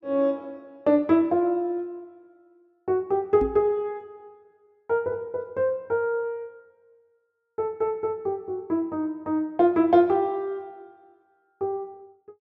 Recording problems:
knock on the microphone; at 3.5 s; peak -2 dB vs average level

